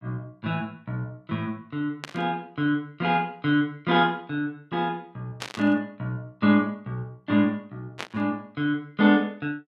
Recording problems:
static burst; at 2 s, at 5.5 s and at 8 s; peak -3 dB vs average level

